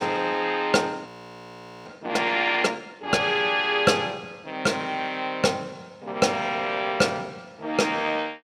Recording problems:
frozen audio; at 1 s for 1 s

